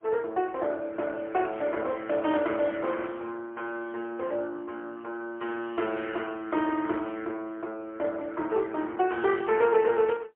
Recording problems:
telephone audio; 280 Hz to 2.8 kHz, AMR-NB, then MP3

